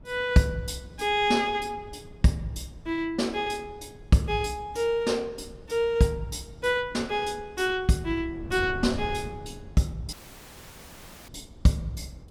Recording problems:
wind on the microphone; below 190 Hz, SNR 18 dB
dropout; at 10 s for 1 s

